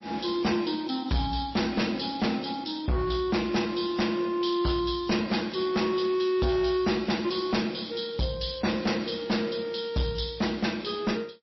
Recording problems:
lossy codec; MP3, log-spectral distance 6 dB, nothing above 5.7 kHz
distorted audio; hard clipping, signal-to-distortion ratio 7 dB

